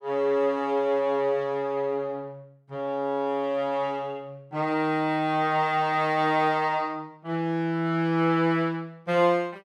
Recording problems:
none

